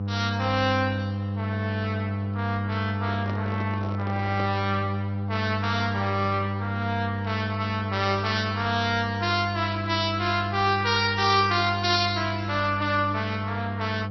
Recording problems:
lossy compression; Opus, then MP2, log-spectral distance 3 dB, nothing above 5.2 kHz
hum; 50 Hz, harmonics up to 1 kHz, SNR 4 dB
handling noise; from 3 to 4.5 s; peak -6 dB vs average level

